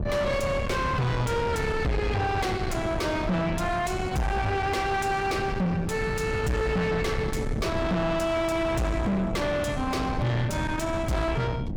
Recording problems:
distorted audio; soft clipping, signal-to-distortion ratio 6 dB
wind on the microphone; below 440 Hz, SNR 5 dB

